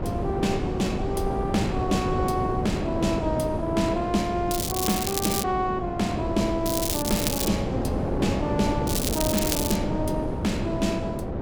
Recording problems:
wind noise; below 440 Hz, SNR 2 dB
crackling; at 4.5 s, at 6.5 s and at 9 s; loose cable, SNR 1 dB

